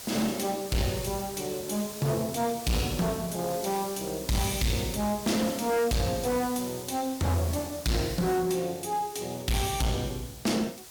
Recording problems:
distortion; hard clipping, uneven, signal-to-distortion ratio 7 dB
background hiss; SNR 11 dB

